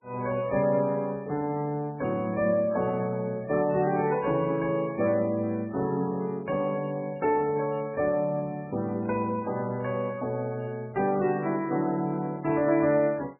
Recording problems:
codec artefacts; MP3, log-spectral distance 2 dB, nothing above 2.4 kHz

